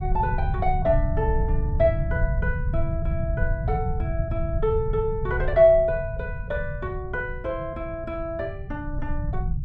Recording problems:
rumble; below 110 Hz, SNR 3 dB

